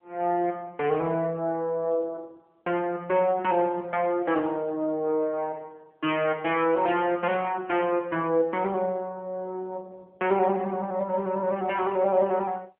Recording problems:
phone line; 260 Hz to 3.3 kHz, AMR-NB

